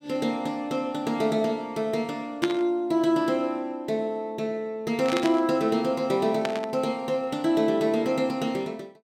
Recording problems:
burst of static; at 2.5 s, at 5 s and at 6.5 s; peak +1 dB vs average level

